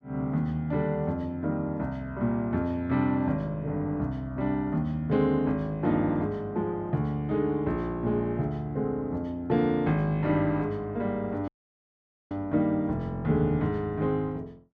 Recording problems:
audio cutting out; at 11 s for 1 s

